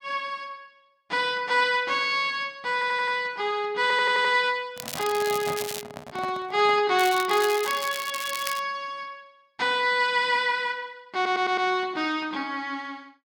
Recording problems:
stutter; at 2.5 s, at 4 s and at 11 s
microphone handling noise; from 4.5 to 7 s; peak -7 dB vs average level
crackling; from 5 to 6 s and from 7 to 8.5 s; loose cable, SNR 10 dB

